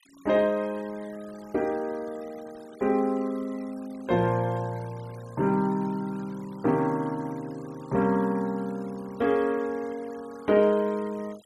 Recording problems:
noise reduction artefacts; signal-to-artefact ratio 24 dB

